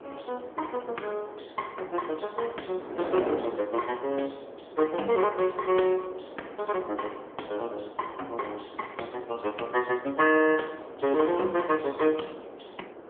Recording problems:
phone line; 260 Hz to 3.3 kHz, AMR-NB
wind noise; below 750 Hz, SNR 13 dB

